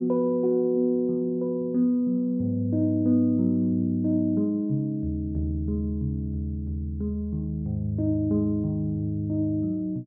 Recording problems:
none

